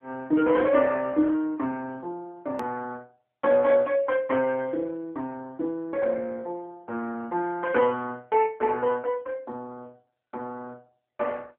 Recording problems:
telephone audio; 190 Hz to 3.4 kHz, AMR-NB
click at an edit; at 2.5 s

